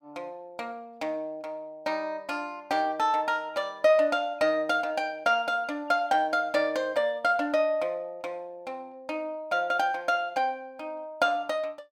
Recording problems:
none

